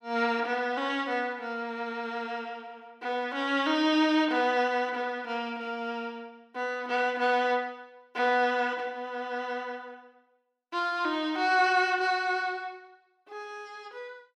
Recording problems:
none

